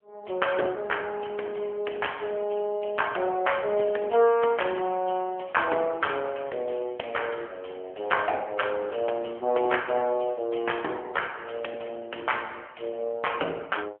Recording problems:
telephone audio; 300 Hz to 3.2 kHz, AMR-NB

